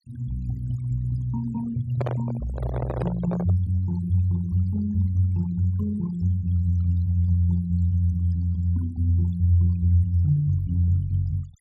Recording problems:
denoising artefacts; signal-to-artefact ratio 22 dB
microphone handling noise; from 2 to 3.5 s; peak -2 dB vs average level

